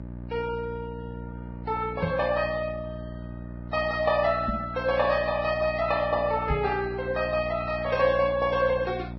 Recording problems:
codec artefacts; Vorbis, then Vorbis, log-spectral distance 2 dB
hum; 60 Hz, harmonics up to 900 Hz, SNR 12 dB
microphone thump; at 2 s, at 4.5 s and at 6.5 s; peak 0 dB vs average level

